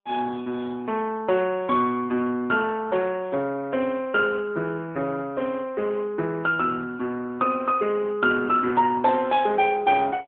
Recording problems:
phone line; 220 Hz to 3.4 kHz, AMR-NB

